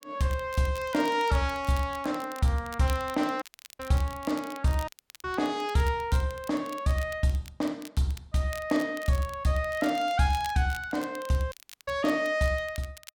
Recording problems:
crackling; vinyl, SNR 19 dB
dropout; at 3.5 s, at 5 s and at 12 s

